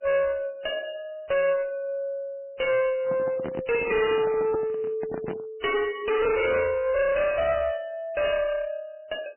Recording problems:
codec artefacts; MP3, log-spectral distance 3 dB, nothing above 2.9 kHz
distortion; hard clipping, uneven, signal-to-distortion ratio 6 dB
handling noise; from 3 to 5.5 s; peak -1 dB vs average level

